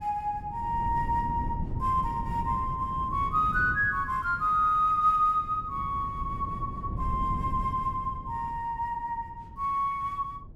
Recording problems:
wind noise; below 170 Hz, SNR 10 dB

